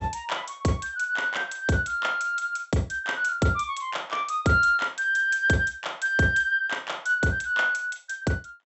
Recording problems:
treble missing; nothing above 7.7 kHz

